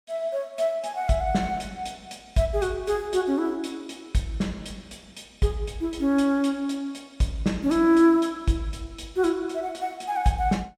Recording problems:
none

